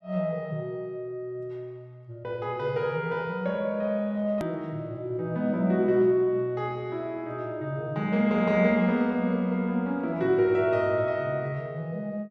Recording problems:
hard cut with a click; at 4.5 s

